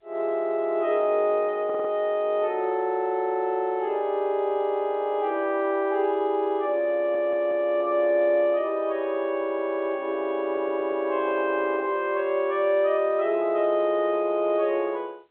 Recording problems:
phone line; 320 Hz to 3.5 kHz, G.711
stutter; at 1.5 s, at 7 s and at 10 s

